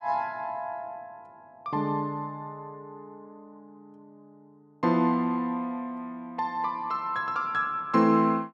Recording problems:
none

